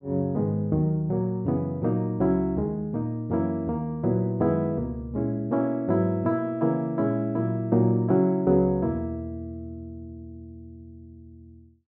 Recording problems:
none

